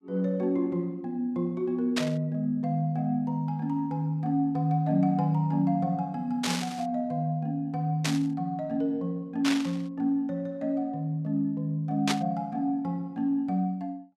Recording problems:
burst of static; 5 times, first at 2 s; peak +4 dB vs average level

